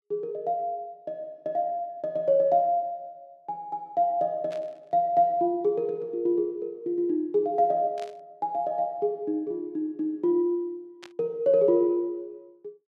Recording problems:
burst of static; at 4.5 s, at 8 s and at 11 s; peak -13 dB vs average level

